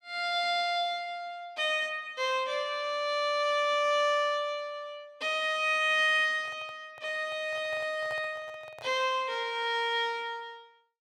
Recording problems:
handling noise; from 6.5 to 9 s; peak -11 dB vs average level

